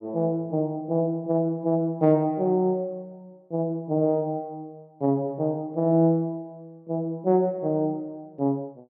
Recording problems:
none

